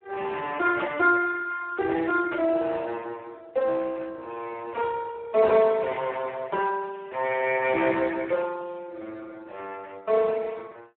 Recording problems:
telephone audio; 300 Hz to 2 kHz, Speex

